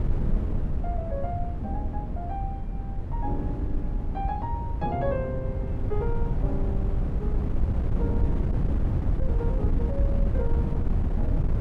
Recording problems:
wind noise; below 100 Hz, SNR -7 dB

